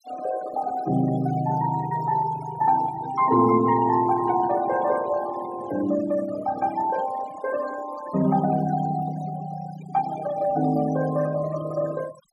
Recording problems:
noise reduction artefacts; signal-to-artefact ratio 16 dB

